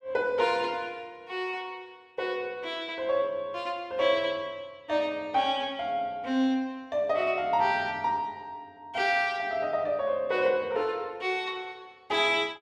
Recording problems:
none

